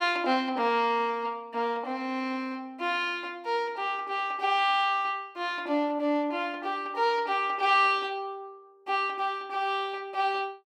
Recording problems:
none

